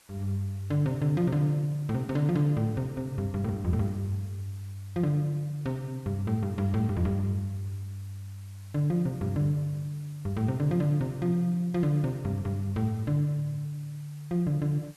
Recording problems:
hiss; slope 0 dB per octave, SNR 27 dB

